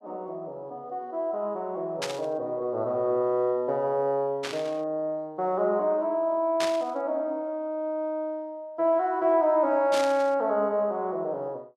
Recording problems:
burst of static; 4 times, first at 2 s; peak 0 dB vs average level

